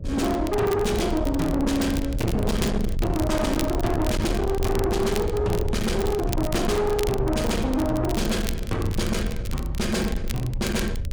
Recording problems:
distortion; soft clipping, signal-to-distortion ratio 7 dB
mains hum; 60 Hz, harmonics up to 720 Hz, SNR 26 dB
rumble; below 160 Hz, SNR 5 dB
crackling; vinyl, SNR 15 dB

